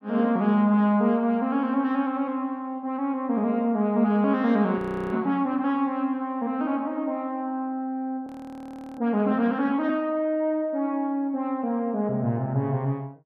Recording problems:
audio freezing; at 5 s and at 8.5 s for 0.5 s

